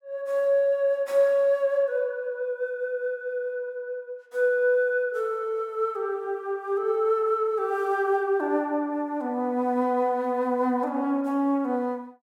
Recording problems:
none

